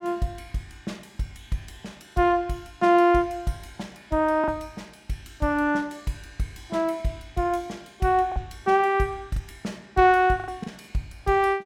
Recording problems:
packet loss; 3% of the sound replaced, filled with the last packet

